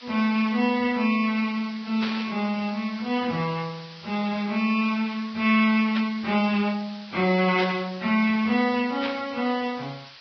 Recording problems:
lossy compression; Vorbis, then AAC, log-spectral distance 9 dB, nothing above 5.2 kHz
background hiss; SNR 19 dB
static burst; 4 times, first at 2 s; peak -4 dB vs average level

